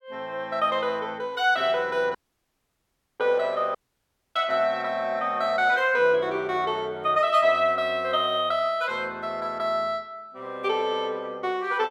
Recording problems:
audio cutting out; at 2 s for 1 s and at 4 s for 0.5 s

